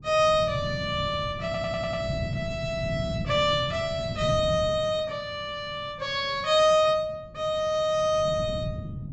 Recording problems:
low-pass filter; nothing above 8 kHz
wind noise; below 190 Hz, SNR 9 dB
stutter; at 1.5 s

